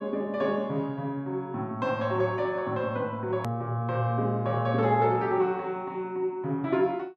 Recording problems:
hard cut with a click; at 3.5 s

